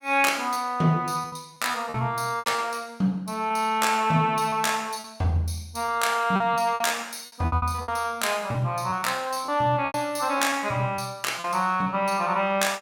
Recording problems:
packet loss; 9% of the sound replaced, filled with repeated pitch periods

